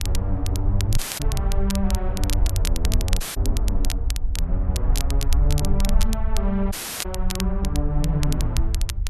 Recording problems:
low-frequency rumble; below 60 Hz, SNR -3 dB
wind on the microphone; below 310 Hz, SNR 22 dB
crackle; vinyl, SNR 5 dB
audio cutting out; at 1 s, at 3 s and at 6.5 s

